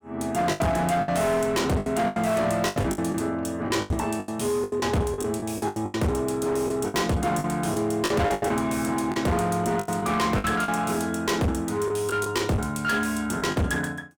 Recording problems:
distortion; hard clipping, uneven, signal-to-distortion ratio 7 dB
lost packets; 12% of the sound replaced, filled with the last packet

